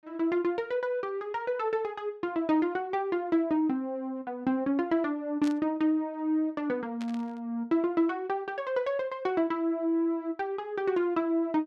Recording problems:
burst of static; at 5.5 s and at 7 s; peak -9 dB vs average level

